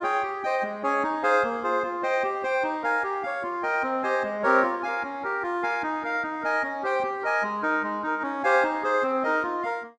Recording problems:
none

